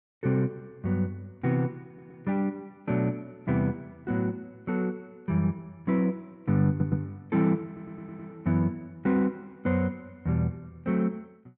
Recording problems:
stutter; at 2 s, at 6.5 s and at 7.5 s

